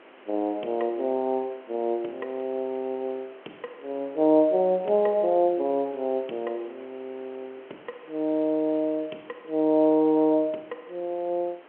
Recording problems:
telephone audio; 260 Hz to 3.4 kHz, G.711
background hiss; SNR 24 dB

